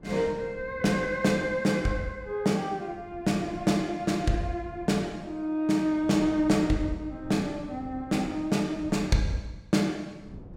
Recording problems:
wind on the microphone; below 230 Hz, SNR 19 dB

